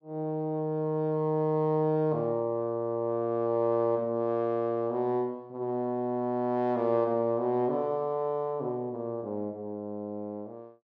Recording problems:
none

